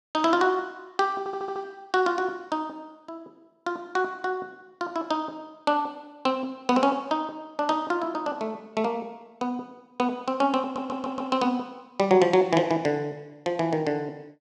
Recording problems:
stutter; at 1 s and at 11 s

